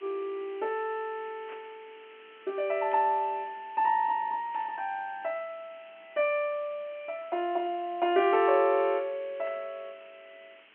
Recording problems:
phone line; 220 Hz to 3.6 kHz, G.711
hiss; SNR 25 dB
static burst; 4 times, first at 1.5 s; peak -15 dB vs average level

